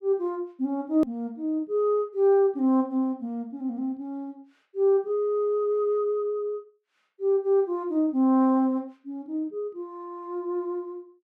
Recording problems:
hard cut with a click; at 1 s

